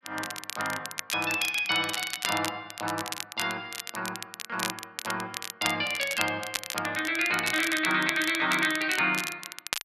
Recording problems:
crackling; vinyl, SNR 7 dB

